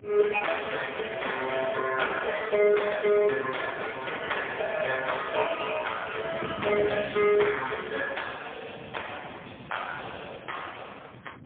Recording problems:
phone line; 170 Hz to 3.4 kHz, AMR-NB, then MP3
wind on the microphone; below 300 Hz, SNR 15 dB

